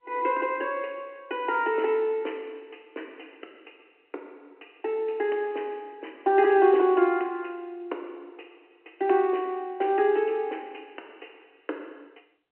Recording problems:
telephone audio; 260 Hz to 3.1 kHz, G.711

